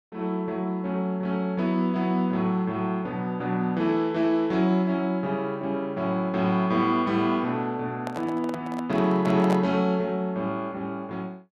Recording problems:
microphone handling noise; from 8 to 9.5 s; peak -1 dB vs average level

